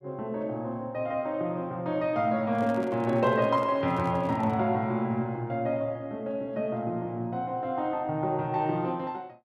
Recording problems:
microphone handling noise; from 2.5 to 4.5 s; peak -10 dB vs average level

